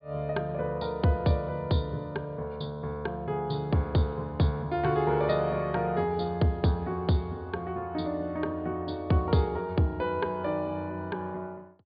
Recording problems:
low-pass filter; nothing above 4.8 kHz

